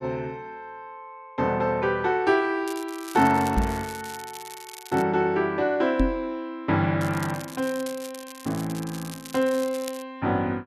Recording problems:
crackling; from 2.5 to 5 s and from 7 to 10 s; loose cable, SNR 16 dB
microphone thump; at 3.5 s and at 6 s; peak +5 dB vs average level

